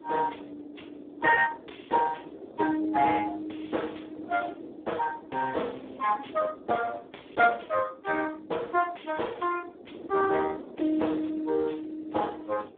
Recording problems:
phone line; 260 Hz to 3.5 kHz, Speex
wind noise; below 450 Hz, SNR 17 dB

